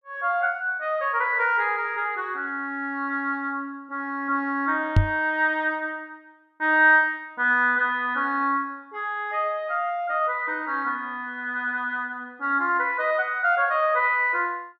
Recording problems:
knock on the microphone; at 5 s; peak +8 dB vs average level

